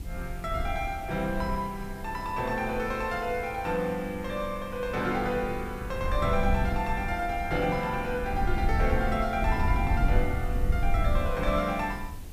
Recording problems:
background hiss; SNR 21 dB
low-frequency rumble; below 82 Hz, SNR 3 dB

